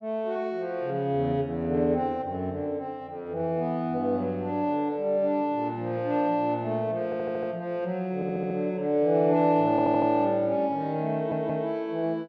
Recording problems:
audio stuttering; 4 times, first at 7 s

